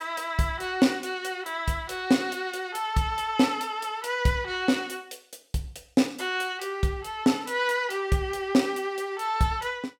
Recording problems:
none

